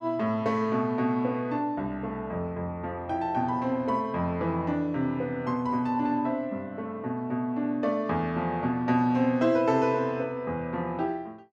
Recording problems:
none

